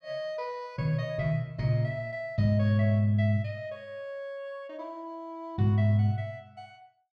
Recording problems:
none

